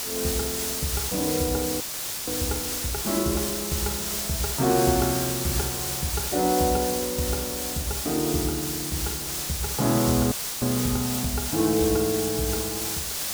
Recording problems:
hiss; slope 0 dB per octave, SNR 1 dB
frozen audio; at 2 s and at 10 s

